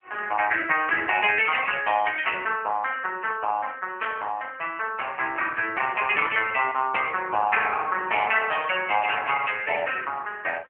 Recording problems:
telephone audio; 320 Hz to 3.1 kHz, AMR-NB

